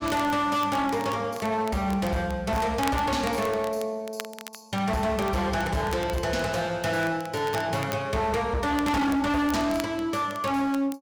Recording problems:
distorted audio; hard clipping, uneven, signal-to-distortion ratio 7 dB
crackling; vinyl, SNR 18 dB

